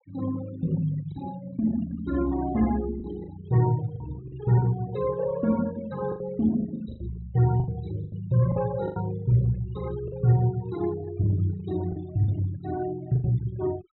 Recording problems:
low-pass filter; nothing above 3.8 kHz
denoising artefacts; signal-to-artefact ratio 18 dB
lost packets; 6% of the sound replaced, filled with the last packet

